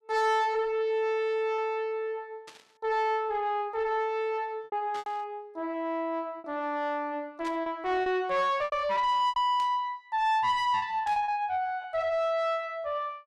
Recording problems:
distorted audio; soft clipping, signal-to-distortion ratio 10 dB
lost packets; 5% of the sound replaced, filled with repeated pitch periods
burst of static; 5 times, first at 2.5 s; peak -12 dB vs average level

